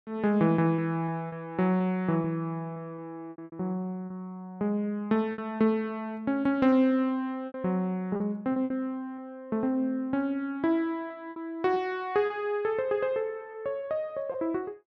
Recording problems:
packet loss; 6% of the sound replaced, filled with repeated pitch periods

